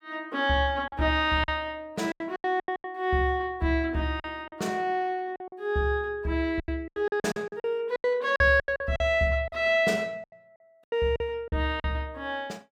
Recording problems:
packet loss; 13% of the sound replaced, filled with silence

